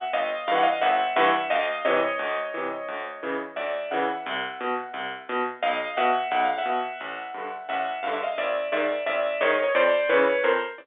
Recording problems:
phone line; 260 Hz to 3.6 kHz, G.711

